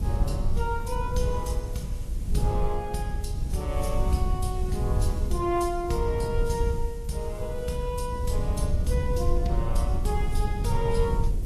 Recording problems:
lossy codec; Vorbis, log-spectral distance 2 dB, nothing above 12.3 kHz
hiss; slope +2 dB per octave, SNR 22 dB
low-frequency rumble; below 84 Hz, SNR -1 dB

